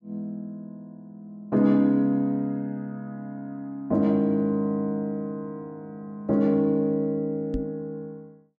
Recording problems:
knock on the microphone; at 7.5 s; peak -1 dB vs average level

